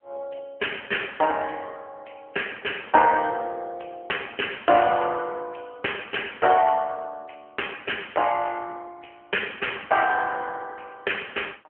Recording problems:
phone line; 260 Hz to 3.1 kHz, AMR-NB

